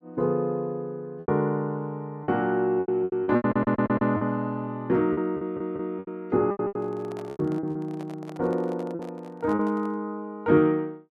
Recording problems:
packet loss; 10% of the sound replaced, filled with repeated pitch periods
audio stuttering; at 3.5 s and at 5.5 s
handling noise; from 6.5 to 10 s; peak -12 dB vs average level

